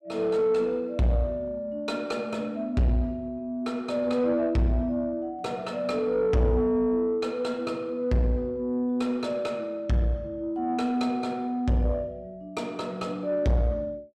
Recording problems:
distortion; soft clipping, signal-to-distortion ratio 11 dB

